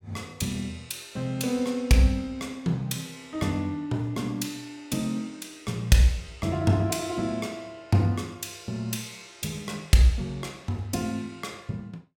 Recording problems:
none

